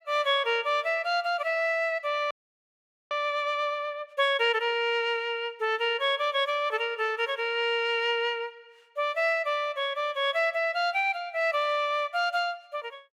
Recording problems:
audio freezing; at 2.5 s for 1 s

